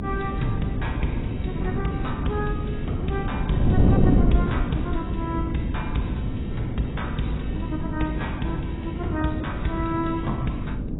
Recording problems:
codec artefacts; AAC, log-spectral distance 2 dB, nothing above 3.8 kHz
hum; 50 Hz, harmonics up to 300 Hz, SNR 7 dB
wind on the microphone; below 220 Hz, SNR -3 dB

